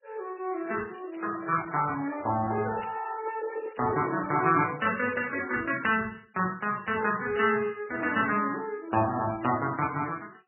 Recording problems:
lossy codec; AAC, then MP3, log-spectral distance 6 dB, nothing above 2.7 kHz
crackle; from 1 to 6 s; loose cable, SNR 26 dB

